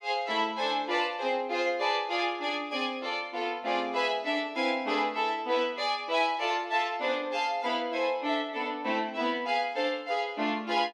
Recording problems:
none

